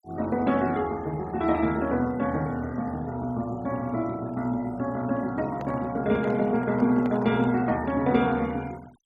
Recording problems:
noise reduction artefacts; signal-to-artefact ratio 23 dB
microphone handling noise; from 5.5 to 7.5 s; peak -8 dB vs average level

